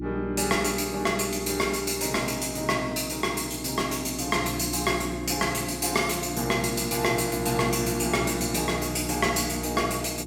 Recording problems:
electrical hum; 60 Hz, harmonics up to 360 Hz, SNR 10 dB

